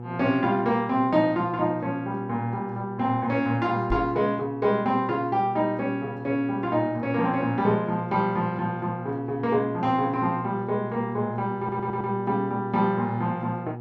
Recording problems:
hum; 60 Hz, harmonics up to 960 Hz, SNR 11 dB
microphone thump; at 4 s; peak 0 dB vs average level
stutter; at 12 s

